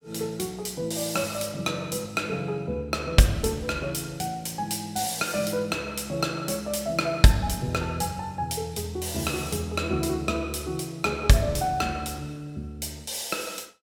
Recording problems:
none

